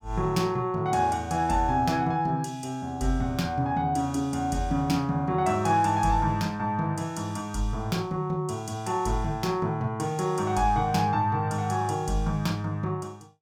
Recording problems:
none

